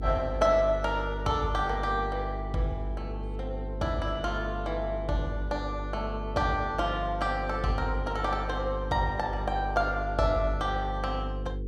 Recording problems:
hum; 50 Hz, harmonics up to 500 Hz, SNR 6 dB

